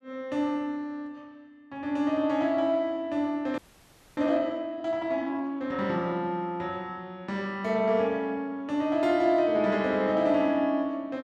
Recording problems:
audio freezing; at 3.5 s for 0.5 s

